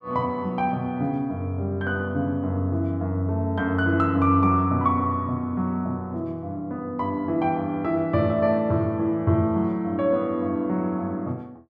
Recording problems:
none

